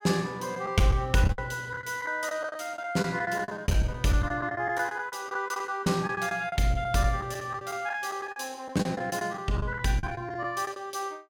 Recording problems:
packet loss; 12% of the sound replaced, filled with the last packet

